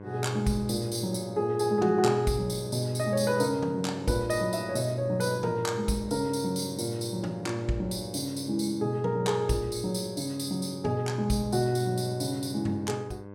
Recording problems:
mains hum; 50 Hz, harmonics up to 1.6 kHz, SNR 16 dB

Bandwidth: 16.5 kHz